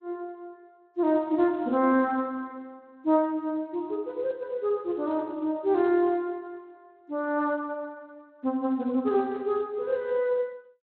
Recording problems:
codec artefacts; AAC, then Speex, log-spectral distance 2 dB, nothing above 3.9 kHz

